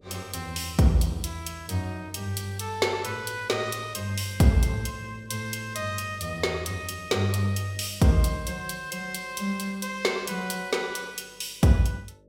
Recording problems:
hum; 50 Hz, harmonics up to 600 Hz, SNR 29 dB

